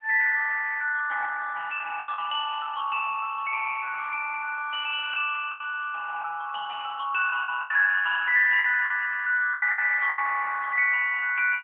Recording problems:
phone line; 260 Hz to 2.8 kHz, AMR-NB
packet loss; 6% of the sound replaced, filled with the last packet

